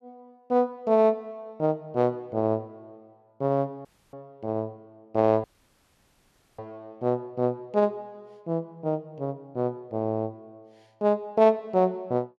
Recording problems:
audio cutting out; at 4 s and at 5.5 s for 1 s

